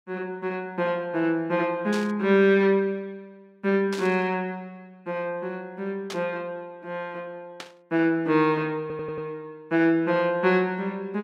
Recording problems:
burst of static; 4 times, first at 2 s; peak -6 dB vs average level
stutter; at 9 s

